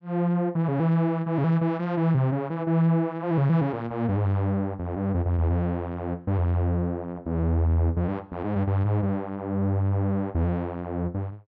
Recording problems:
none

